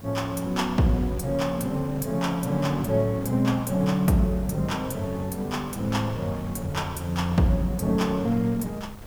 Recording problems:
background hiss; slope +2 dB per octave, SNR 27 dB
wind noise; below 430 Hz, SNR 17 dB

